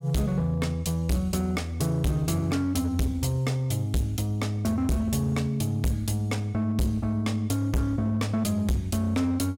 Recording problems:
distortion; hard clipping, signal-to-distortion ratio 7 dB

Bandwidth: 16.5 kHz